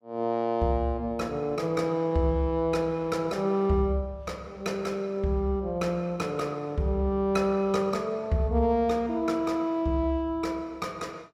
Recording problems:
none

